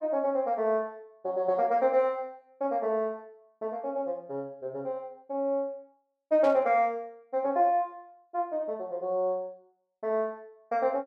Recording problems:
static burst; at 6.5 s; peak -10 dB vs average level

